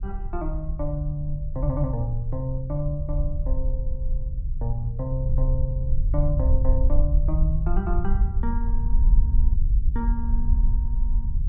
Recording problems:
low-frequency rumble; below 58 Hz, SNR -4 dB

